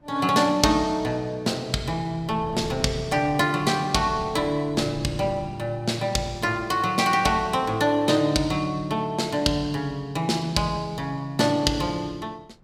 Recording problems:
wind noise; below 300 Hz, SNR 18 dB

